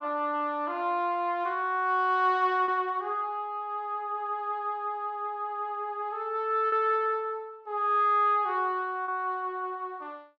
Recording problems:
lost packets; 1.2% of the sound replaced, filled with repeated pitch periods

